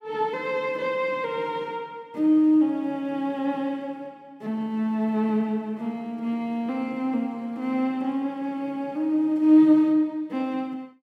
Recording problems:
none

